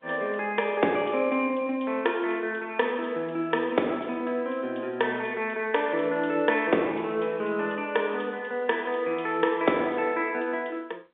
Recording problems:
telephone audio; 240 Hz to 3.7 kHz, G.711

